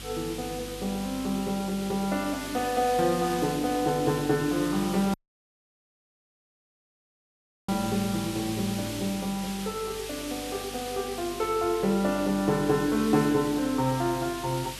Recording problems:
electrical hum; 50 Hz, harmonics up to 350 Hz, SNR 20 dB
background hiss; SNR 11 dB
dropout; at 5 s for 2.5 s

